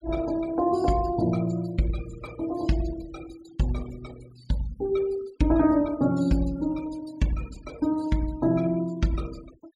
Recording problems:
noise reduction artefacts; signal-to-artefact ratio 22 dB

